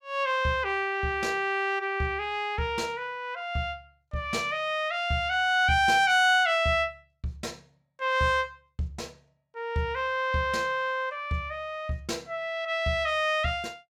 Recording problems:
none

